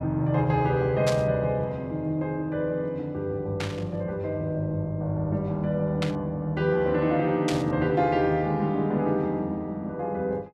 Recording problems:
burst of static; 4 times, first at 1 s; peak -1 dB vs average level

